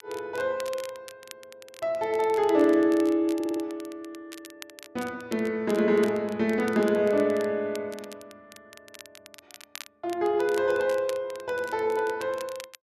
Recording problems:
crackling; vinyl, SNR 20 dB
audio stuttering; at 3.5 s

